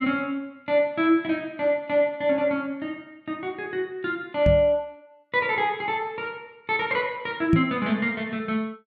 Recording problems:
microphone thump; at 4.5 s and at 7.5 s; peak +8 dB vs average level

